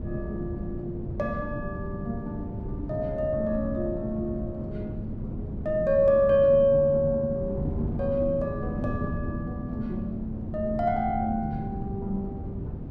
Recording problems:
wind on the microphone; below 220 Hz, SNR 8 dB

